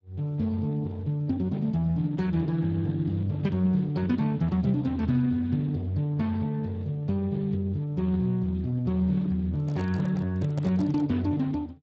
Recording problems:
lossy codec; Speex, log-spectral distance 2 dB
microphone handling noise; from 9.5 to 11 s; peak -10 dB vs average level

